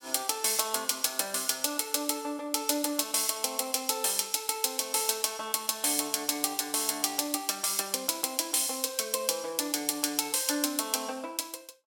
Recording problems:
none

